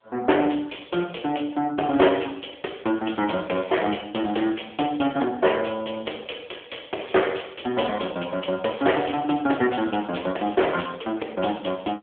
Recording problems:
phone line; 260 Hz to 3.4 kHz, AMR-NB

